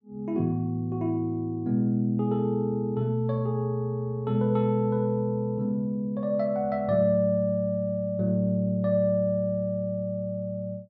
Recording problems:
none

